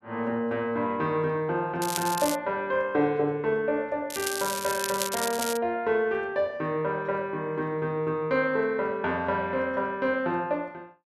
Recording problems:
crackle; at 2 s and from 4 to 5.5 s; loose cable, SNR 5 dB

